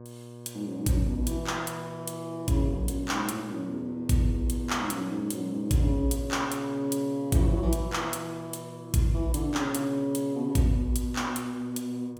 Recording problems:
hum; 60 Hz, harmonics up to 1.2 kHz, SNR 16 dB

